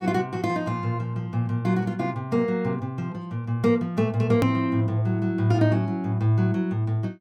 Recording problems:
edit click; at 4.5 s

